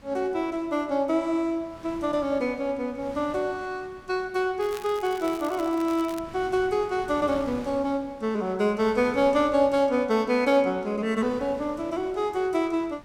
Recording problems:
wind on the microphone; below 1.3 kHz, SNR 21 dB
crackle; from 4.5 to 6 s; loose cable, SNR 20 dB

